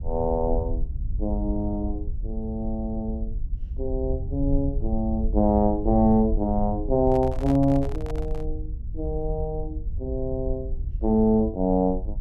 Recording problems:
rumble; below 66 Hz, SNR 7 dB
microphone handling noise; from 7 to 8.5 s; peak -9 dB vs average level

